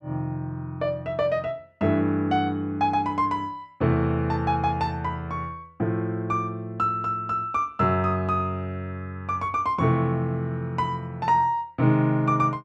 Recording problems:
none

